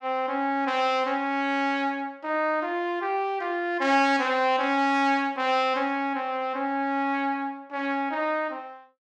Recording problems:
none

